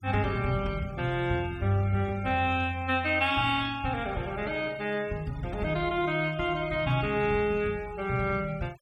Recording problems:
noise reduction artefacts; signal-to-artefact ratio 22 dB

